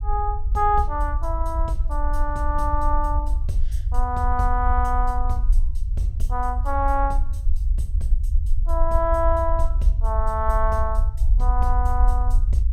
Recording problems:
rumble; below 56 Hz, SNR -1 dB

